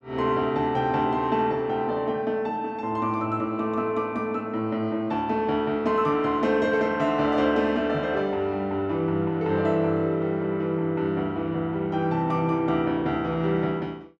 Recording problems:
none

